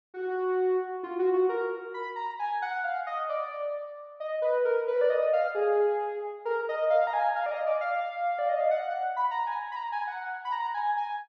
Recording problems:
none

